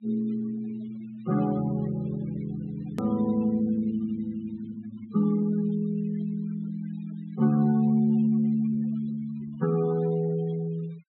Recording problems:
low-pass filter; nothing above 4 kHz
denoising artefacts; signal-to-artefact ratio 20 dB
edit click; at 3 s

